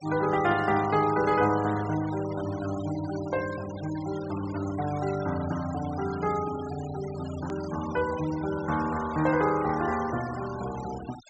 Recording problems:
treble missing; nothing above 8 kHz
denoising artefacts; signal-to-artefact ratio 15 dB
edit click; at 7.5 s

